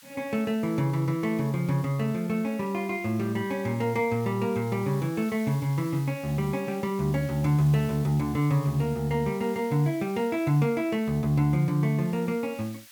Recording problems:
hiss; SNR 21 dB

